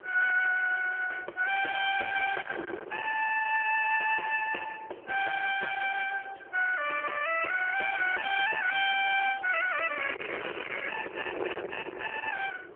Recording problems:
phone line; 410 Hz to 2.9 kHz, AMR-NB
distorted audio; hard clipping, signal-to-distortion ratio 7 dB
wind noise; below 2.3 kHz, SNR 14 dB

